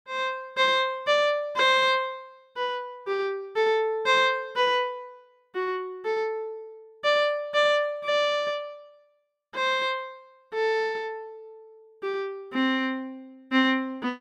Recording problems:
none

